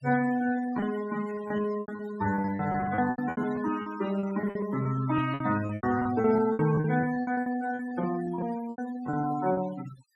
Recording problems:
noise reduction artefacts; signal-to-artefact ratio 13 dB
packet loss; 17% of the sound replaced, filled with repeated pitch periods

